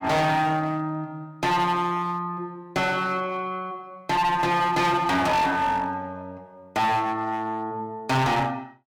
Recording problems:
distortion; hard clipping, uneven, signal-to-distortion ratio 6 dB

